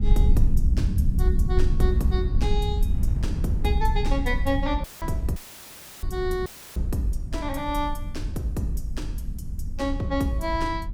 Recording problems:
low-frequency rumble; below 76 Hz, SNR -1 dB
wind on the microphone; below 240 Hz, SNR 18 dB
dropout; at 5 s, at 5.5 s for 0.5 s and at 6.5 s; filled with static

